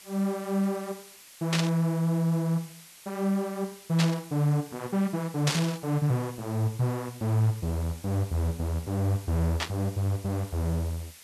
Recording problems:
background hiss; slope +2 dB per octave, SNR 19 dB
burst of static; 4 times, first at 1.5 s; peak +5 dB vs average level

